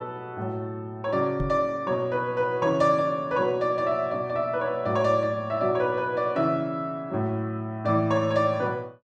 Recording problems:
microphone thump; at 1.5 s; peak -2 dB vs average level

